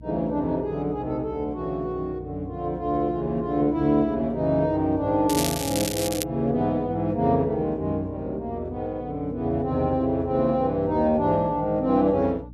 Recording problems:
hum; 60 Hz, harmonics up to 300 Hz, SNR 18 dB
crackling; at 5.5 s; loose cable, SNR 5 dB

